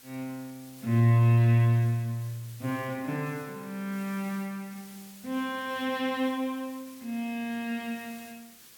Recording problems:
hiss; slope +1 dB per octave, SNR 22 dB

